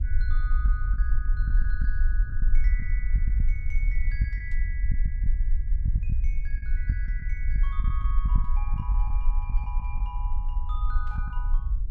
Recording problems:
low-frequency rumble; below 48 Hz, SNR -14 dB
packet loss; 7% of the sound replaced, filled with the last packet
burst of static; at 4.5 s, at 8.5 s and at 11 s; peak -11 dB vs average level

